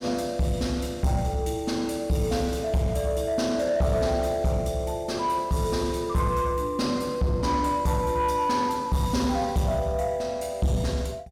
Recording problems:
distorted audio; soft clipping, signal-to-distortion ratio 12 dB

